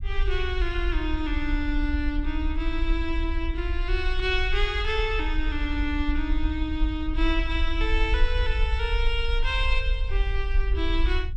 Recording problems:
rumble; below 52 Hz, SNR 0 dB

